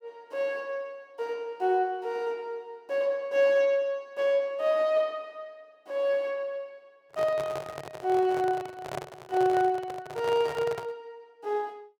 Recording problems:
microphone handling noise; from 7 to 11 s; peak -3 dB vs average level

